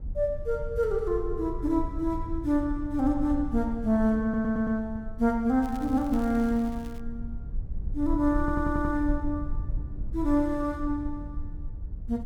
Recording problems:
rumble; below 68 Hz, SNR 9 dB
audio stuttering; at 4 s and at 8.5 s
crackle; from 5.5 to 7 s; loose cable, SNR 25 dB

